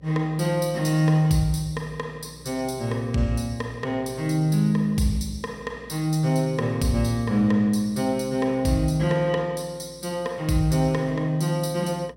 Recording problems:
electrical hum; 60 Hz, harmonics up to 600 Hz, SNR 26 dB

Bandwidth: 16.5 kHz